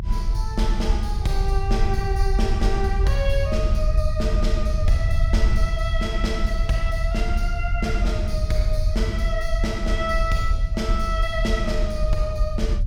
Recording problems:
rumble; below 66 Hz, SNR -3 dB

